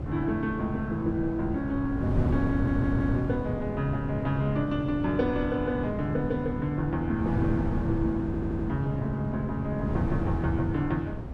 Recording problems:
wind noise; below 230 Hz, SNR 3 dB
audio stuttering; at 2.5 s and at 8.5 s

